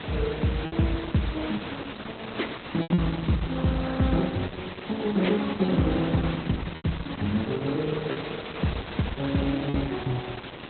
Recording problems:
codec artefacts; Opus, log-spectral distance 16 dB, nothing above 4.1 kHz
background hiss; SNR 9 dB
lost packets; 4% of the sound replaced, filled with repeated pitch periods

